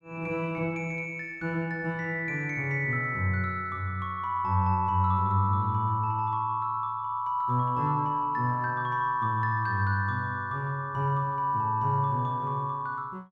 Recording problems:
none

